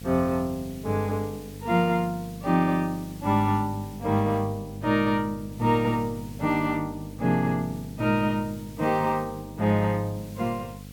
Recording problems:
electrical hum; 50 Hz, harmonics up to 750 Hz, SNR 15 dB
background hiss; slope +1 dB per octave, SNR 23 dB

